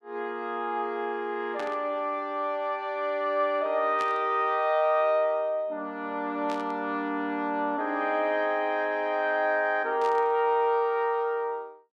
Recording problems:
burst of static; 4 times, first at 1.5 s; peak -9 dB vs average level

